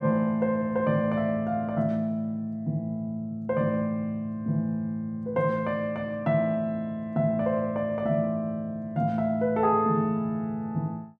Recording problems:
none

